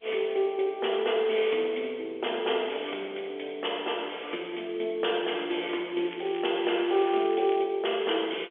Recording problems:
phone line; 320 Hz to 3.4 kHz, G.711
crackle; from 6 to 7.5 s; loose cable, SNR 16 dB

